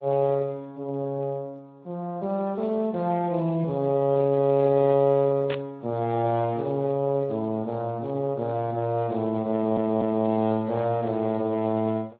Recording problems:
lossy compression; AAC, then Speex, log-spectral distance 2 dB
static burst; at 5.5 s; peak -3 dB vs average level
stutter; at 9.5 s

